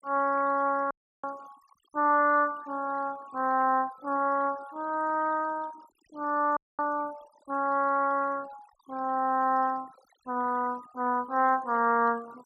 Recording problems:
noise reduction artefacts; signal-to-artefact ratio 24 dB
dropout; at 1 s and at 6.5 s

